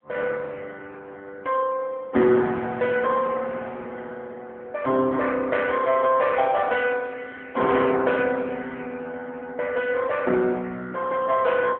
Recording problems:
phone line; 190 Hz to 3.5 kHz, AMR-NB

